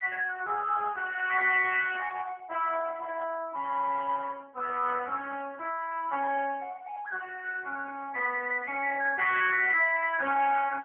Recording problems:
phone line; 390 Hz to 3 kHz, AMR-NB

